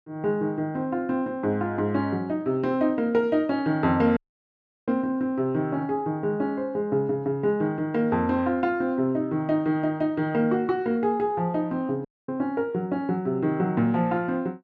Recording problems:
dropout; at 4 s for 0.5 s and at 12 s

